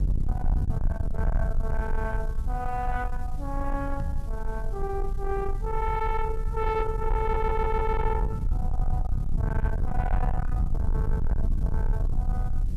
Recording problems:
distortion; soft clipping, signal-to-distortion ratio 7 dB
background hiss; slope 0 dB per octave, SNR 26 dB
rumble; below 70 Hz, SNR -2 dB
microphone bump; at 4 s; peak +3 dB vs average level
audio stuttering; at 7 s

